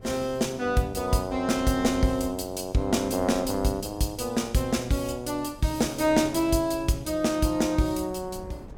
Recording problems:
wind noise; below 300 Hz, SNR 19 dB

